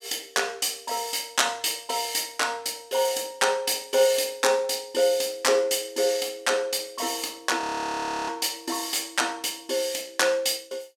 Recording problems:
frozen audio; at 7.5 s for 0.5 s

